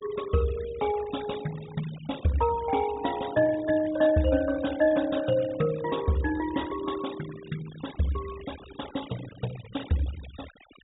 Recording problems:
treble missing; nothing above 4 kHz
noise reduction artefacts; signal-to-artefact ratio 17 dB

